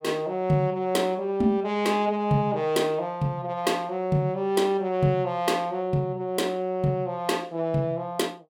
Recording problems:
none

